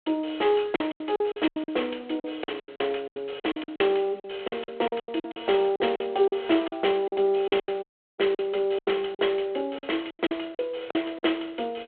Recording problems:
phone line; 300 Hz to 3.4 kHz, G.726
packet loss; 16% of the sound replaced, filled with silence
dropout; at 8 s

